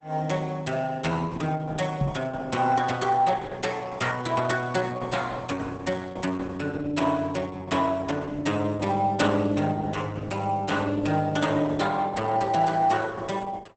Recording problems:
lossy compression; Opus, log-spectral distance 4 dB, nothing above 8.2 kHz
microphone thump; at 2 s; peak +4 dB vs average level

